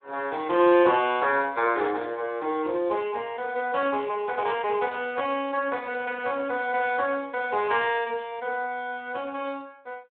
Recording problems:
phone line; 240 Hz to 3.6 kHz, Speex

